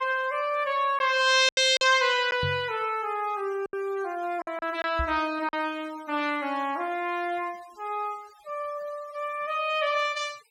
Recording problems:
noise reduction artefacts; signal-to-artefact ratio 23 dB
lost packets; 3% of the sound replaced, filled with silence
microphone bump; at 2.5 s and at 5 s; peak -2 dB vs average level

